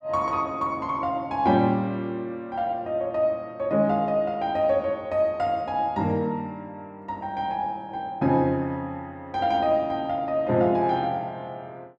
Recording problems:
none

